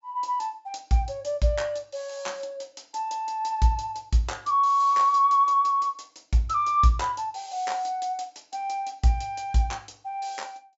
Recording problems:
treble missing; nothing above 8 kHz

